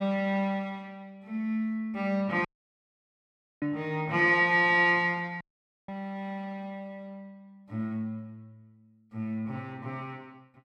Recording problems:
dropout; at 2.5 s for 1 s and at 5.5 s

